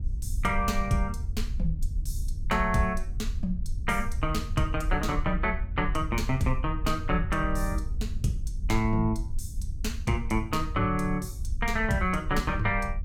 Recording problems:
low-frequency rumble; below 66 Hz, SNR 5 dB

